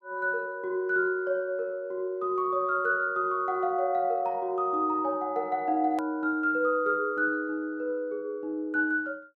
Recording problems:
hard cut with a click; at 6 s

